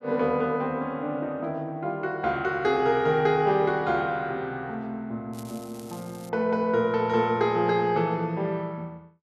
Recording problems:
crackle; at 5.5 s; loose cable, SNR 23 dB

